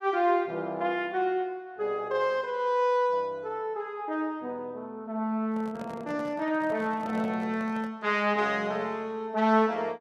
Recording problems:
handling noise; from 5.5 to 8 s; peak -9 dB vs average level

